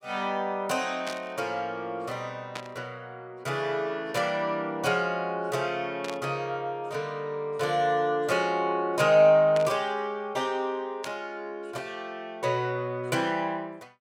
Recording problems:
burst of static; 5 times, first at 1 s; peak -4 dB vs average level

